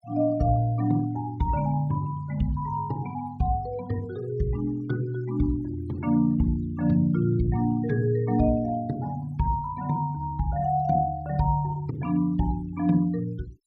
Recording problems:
noise reduction artefacts; signal-to-artefact ratio 25 dB

